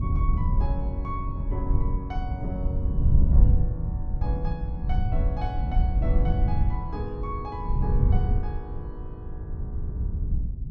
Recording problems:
wind noise; below 92 Hz, SNR -9 dB

